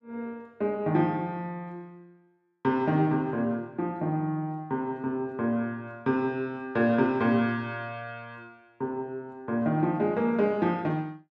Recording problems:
none

